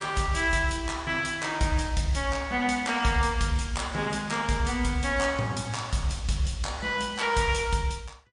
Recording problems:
codec artefacts; MP3, log-spectral distance 4 dB

